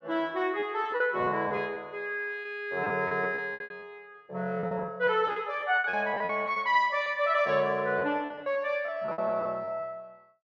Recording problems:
lost packets; 12% of the sound replaced, filled with repeated pitch periods

